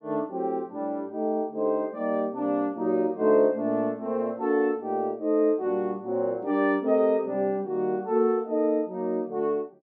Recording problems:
none

